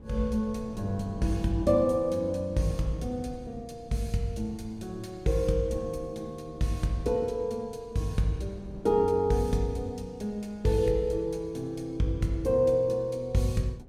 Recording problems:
wind noise; below 210 Hz, SNR 18 dB

